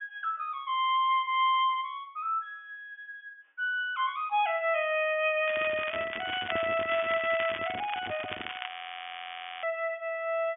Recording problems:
treble missing; nothing above 3.4 kHz
microphone handling noise; from 5.5 to 8.5 s; peak -6 dB vs average level
crackling; from 5.5 to 8.5 s; loose cable, SNR 10 dB
audio freezing; at 8.5 s for 1 s

